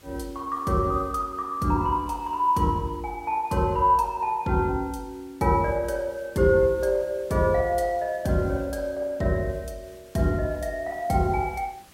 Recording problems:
hiss; slope -2 dB per octave, SNR 28 dB

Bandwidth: 16 kHz